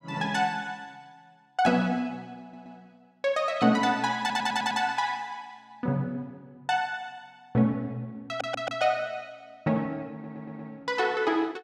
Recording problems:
audio stuttering; 4 times, first at 2.5 s

